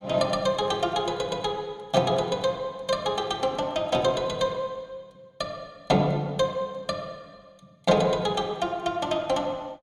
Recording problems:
none

